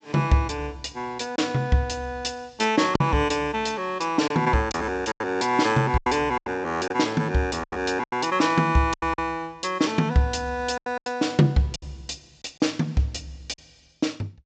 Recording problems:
treble cut off; nothing above 8 kHz
packet loss; 7% of the sound replaced, filled with silence

